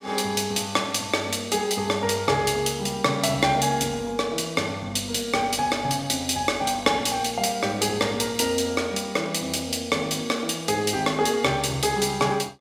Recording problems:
none

